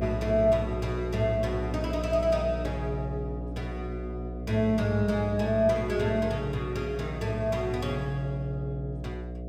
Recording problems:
hum; 60 Hz, harmonics up to 720 Hz, SNR 7 dB

